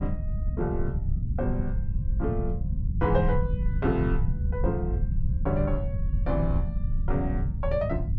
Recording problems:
rumble; below 110 Hz, SNR -2 dB

